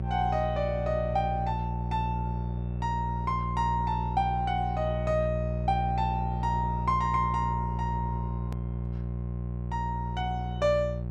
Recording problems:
electrical hum; 60 Hz, harmonics up to 600 Hz, SNR 2 dB
click at an edit; at 8.5 s

